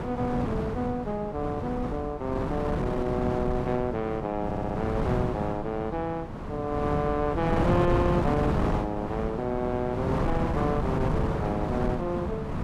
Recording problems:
wind noise; below 500 Hz, SNR 0 dB
audio stuttering; at 4.5 s

